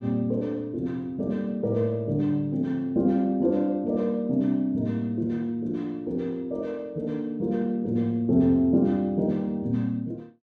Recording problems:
none

